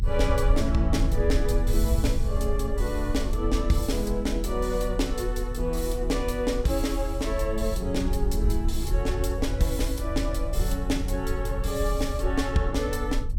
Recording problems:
rumble; below 64 Hz, SNR 1 dB

